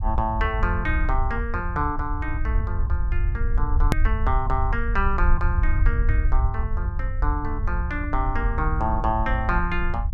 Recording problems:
low-frequency rumble; below 68 Hz, SNR -2 dB
click at an edit; at 4 s

